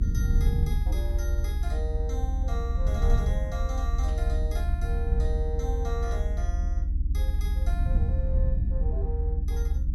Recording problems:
hum; 60 Hz, harmonics up to 300 Hz, SNR 8 dB
low-frequency rumble; below 72 Hz, SNR -10 dB
static burst; at 4 s; peak -9 dB vs average level

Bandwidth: 16 kHz